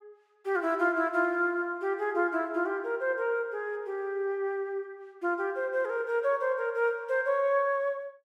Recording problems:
none

